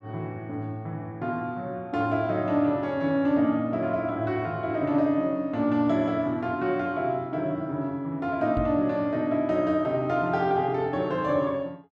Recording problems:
microphone thump; at 8.5 s; peak -2 dB vs average level

